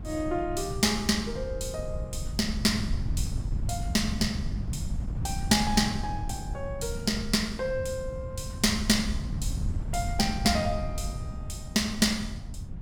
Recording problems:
wind on the microphone; below 130 Hz, SNR 6 dB

